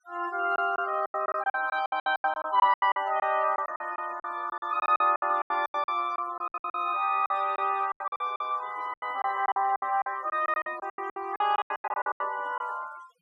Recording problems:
denoising artefacts; signal-to-artefact ratio 21 dB
packet loss; 20% of the sound replaced, filled with silence

